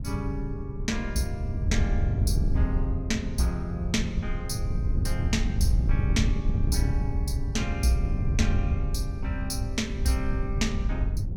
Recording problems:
wind on the microphone; below 100 Hz, SNR -3 dB

